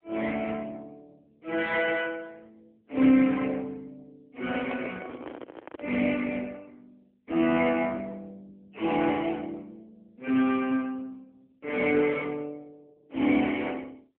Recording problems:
phone line; 220 Hz to 3.3 kHz, AMR-NB
microphone handling noise; from 4.5 to 6 s; peak -7 dB vs average level

